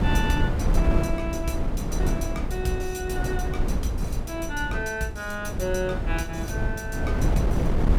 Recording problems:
wind noise; below 170 Hz, SNR -3 dB

